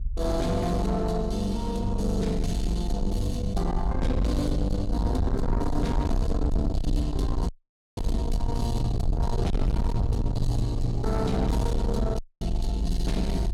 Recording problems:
distortion; soft clipping, signal-to-distortion ratio 7 dB
low-frequency rumble; below 76 Hz, SNR 2 dB
audio cutting out; at 7.5 s and at 12 s

